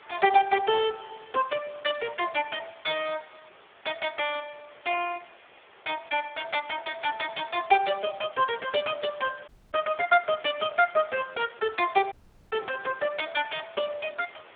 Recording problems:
phone line; 320 Hz to 3.5 kHz, Speex
hiss; SNR 23 dB
dropout; at 9.5 s and at 12 s

